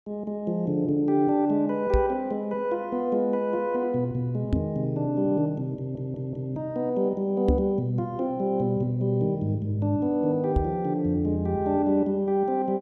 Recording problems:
microphone bump; 4 times, first at 2 s; peak +5 dB vs average level
stutter; at 6 s

